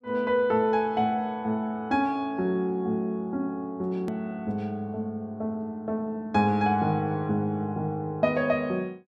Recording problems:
hard cut with a click; at 4 s

